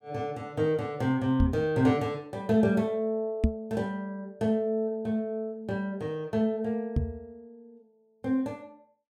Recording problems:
microphone bump; at 1.5 s, at 3.5 s and at 7 s; peak +8 dB vs average level

